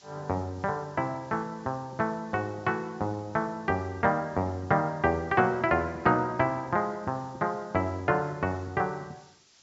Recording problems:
low-pass filter; nothing above 8 kHz
hiss; SNR 28 dB

